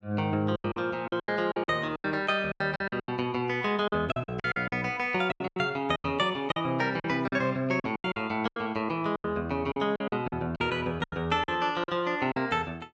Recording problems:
lost packets; 15% of the sound replaced, filled with silence

